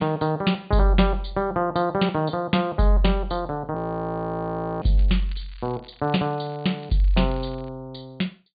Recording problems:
treble missing; nothing above 4.7 kHz
frozen audio; at 4 s for 1 s
crackling; from 5 to 7.5 s; loose cable, SNR 27 dB

